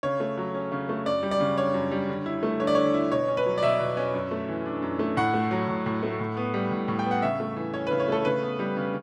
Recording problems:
none

